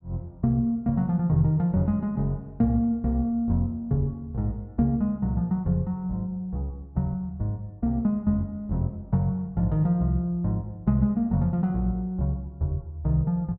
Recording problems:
none

